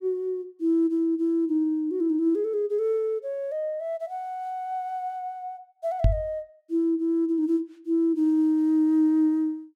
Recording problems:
knock on the microphone; at 6 s; peak +7 dB vs average level

